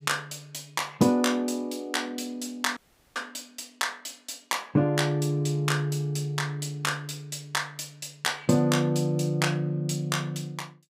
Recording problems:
audio cutting out; at 3 s

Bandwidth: 15.5 kHz